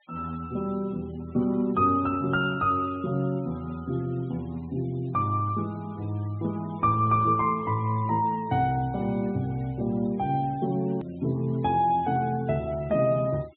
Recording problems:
low-pass filter; nothing above 4 kHz
denoising artefacts; signal-to-artefact ratio 27 dB
click at an edit; at 11 s

